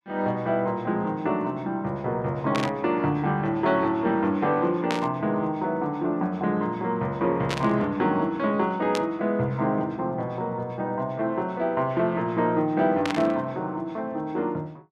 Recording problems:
static burst; 5 times, first at 2.5 s; peak 0 dB vs average level

